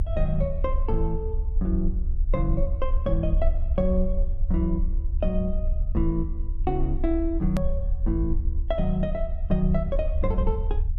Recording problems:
low-frequency rumble; below 66 Hz, strongest tone 24 Hz, SNR 0 dB
edit click; at 7.5 s

